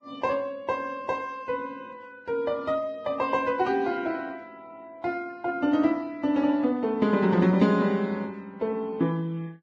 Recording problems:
codec artefacts; Vorbis, log-spectral distance 2 dB, nothing above 10.1 kHz

